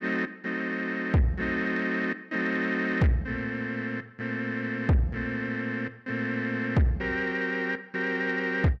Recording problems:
distortion; soft clipping, signal-to-distortion ratio 7 dB

